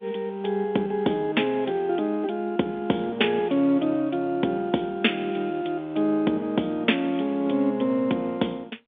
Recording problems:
telephone audio; 190 Hz to 3.6 kHz, G.711

